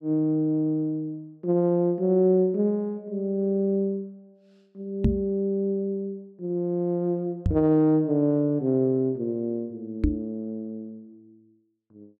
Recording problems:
knock on the microphone; at 5 s, at 7.5 s and at 10 s; peak +6 dB vs average level

